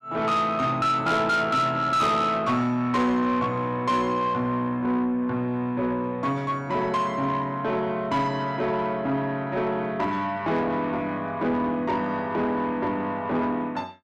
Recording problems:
distorted audio; soft clipping, signal-to-distortion ratio 11 dB

